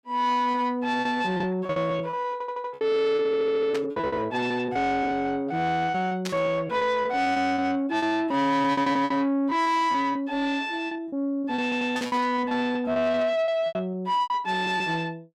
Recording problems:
distortion; soft clipping, signal-to-distortion ratio 11 dB
packet loss; 15% of the sound replaced, filled with repeated pitch periods
stutter; at 2.5 s, at 3.5 s and at 12 s
burst of static; at 3.5 s, at 6.5 s and at 12 s; peak -4 dB vs average level

